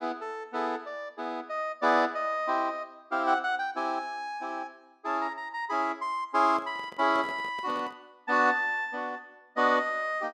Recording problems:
handling noise; from 6.5 to 8 s; peak -10 dB vs average level

